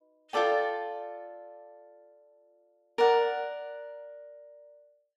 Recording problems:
none

